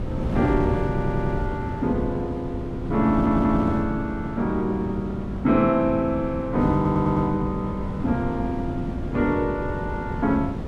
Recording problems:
wind noise; below 270 Hz, SNR 5 dB
audio stuttering; at 1 s, at 3 s and at 7 s

